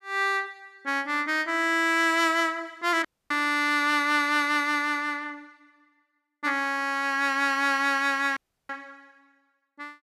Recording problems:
dropout; at 3 s and at 8.5 s

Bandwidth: 14.5 kHz